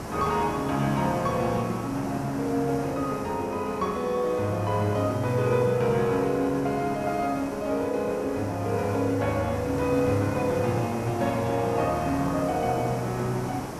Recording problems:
hiss; SNR 10 dB

